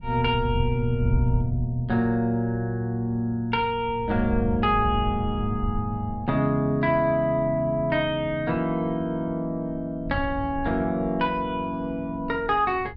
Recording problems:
wind noise; below 110 Hz, SNR 8 dB

